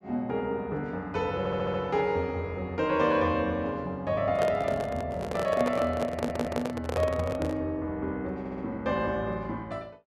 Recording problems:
stutter; at 1.5 s, at 6 s and at 8.5 s
microphone handling noise; from 4.5 to 7.5 s; peak +2 dB vs average level

